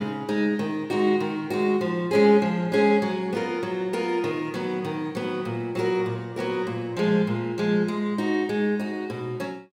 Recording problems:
none

